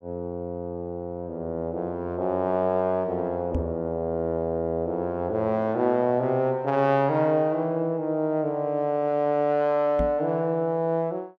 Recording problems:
knock on the microphone; at 3.5 s and at 10 s; peak +2 dB vs average level

